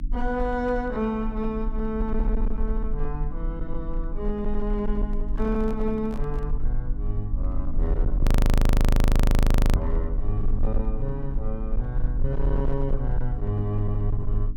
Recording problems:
distortion; hard clipping, uneven, signal-to-distortion ratio 12 dB
mains hum; 50 Hz, harmonics up to 300 Hz, SNR 9 dB
rumble; below 50 Hz, strongest tone 26 Hz, SNR -1 dB
handling noise; from 5 to 6.5 s; peak -9 dB vs average level
audio freezing; at 8 s for 1.5 s

